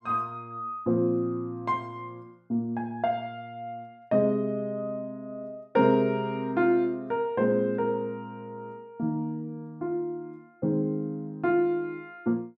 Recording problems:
none

